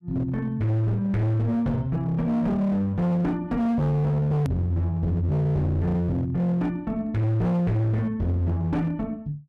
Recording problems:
distorted audio; hard clipping, signal-to-distortion ratio 7 dB
edit click; at 4.5 s

